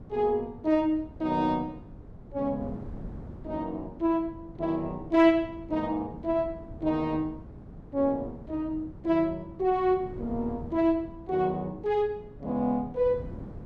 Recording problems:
wind on the microphone; below 250 Hz, SNR 16 dB

